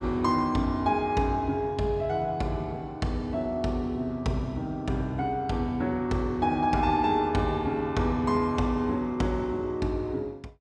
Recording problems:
none

